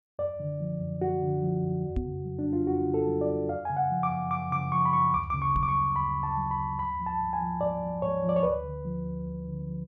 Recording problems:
knock on the microphone; at 2 s and at 5.5 s; peak +1 dB vs average level

